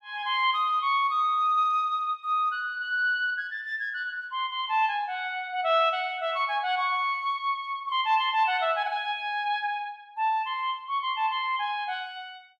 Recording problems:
none

